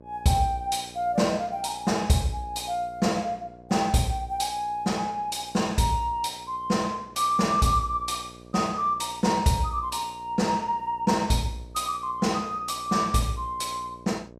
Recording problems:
hum; 60 Hz, harmonics up to 1.1 kHz, SNR 23 dB

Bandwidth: 14.5 kHz